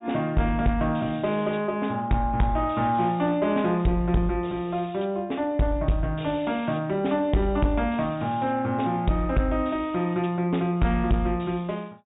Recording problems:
treble cut off; nothing above 3.8 kHz
distortion; soft clipping, signal-to-distortion ratio 11 dB

